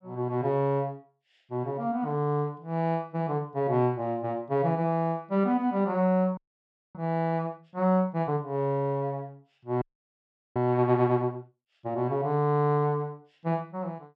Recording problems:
audio freezing; at 6.5 s for 0.5 s and at 10 s for 0.5 s

